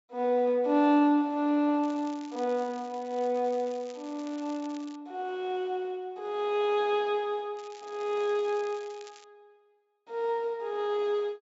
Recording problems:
treble missing; nothing above 8 kHz
crackle; from 2 to 5 s and from 7.5 to 9 s; loose cable, SNR 24 dB

